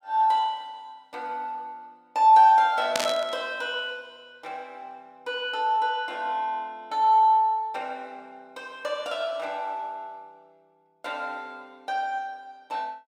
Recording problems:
burst of static; at 3 s; peak +2 dB vs average level

